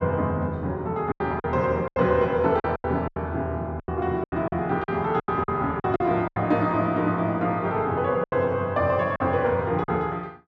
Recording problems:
packet loss; 10% of the sound replaced, filled with silence

